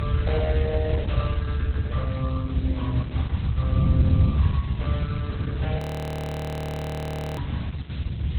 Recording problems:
codec artefacts; Vorbis, then Opus, log-spectral distance 3 dB, nothing above 20.1 kHz
hiss; SNR 14 dB
low-frequency rumble; below 86 Hz, strongest tone 72 Hz, SNR -7 dB
wind on the microphone; below 150 Hz, SNR -5 dB
frozen audio; at 6 s for 1.5 s

